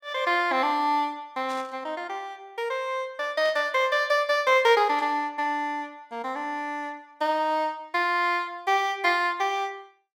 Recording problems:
burst of static; at 1.5 s, at 3.5 s and at 5 s; peak -13 dB vs average level

